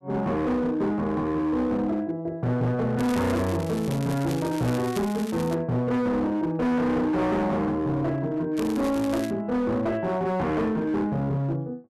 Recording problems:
distorted audio; hard clipping, signal-to-distortion ratio 8 dB
crackle; from 3 to 5.5 s and at 8.5 s; loose cable, SNR 16 dB

